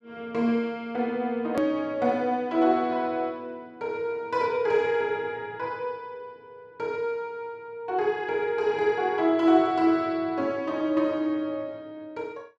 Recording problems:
hard cut with a click; at 1.5 s

